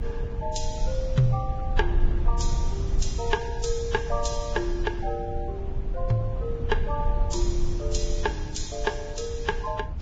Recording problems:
lossy codec; Vorbis, then Vorbis, log-spectral distance 3 dB, nothing above 7.6 kHz
low-frequency rumble; below 62 Hz, strongest tone 24 Hz, SNR 1 dB

